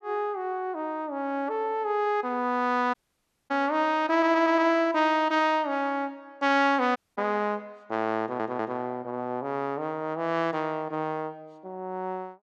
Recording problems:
audio cutting out; at 3 s for 0.5 s and at 7 s
audio stuttering; at 4 s and at 8 s

